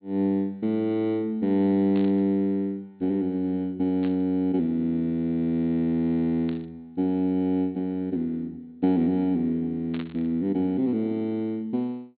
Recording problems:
low-pass filter; nothing above 4.3 kHz
static burst; 4 times, first at 2 s; peak -11 dB vs average level

